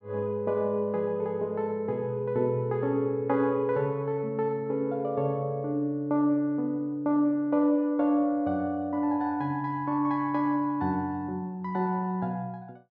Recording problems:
none

